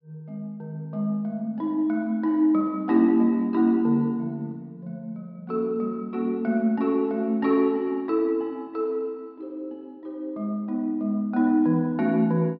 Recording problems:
low-pass filter; nothing above 5.3 kHz

